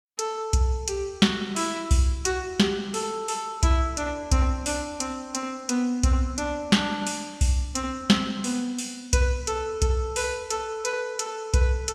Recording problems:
none

